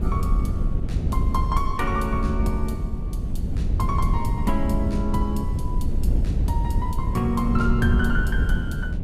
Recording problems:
wind noise; below 96 Hz, SNR -2 dB

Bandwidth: 15.5 kHz